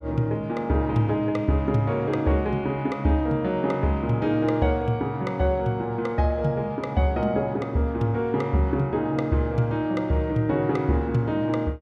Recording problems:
none

